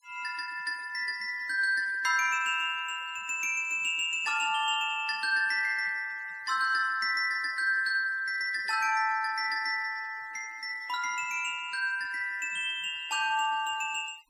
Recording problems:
denoising artefacts; signal-to-artefact ratio 26 dB

